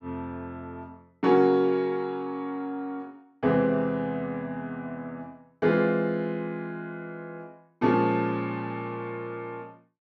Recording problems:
none

